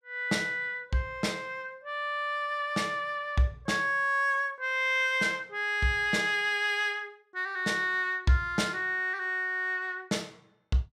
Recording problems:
none

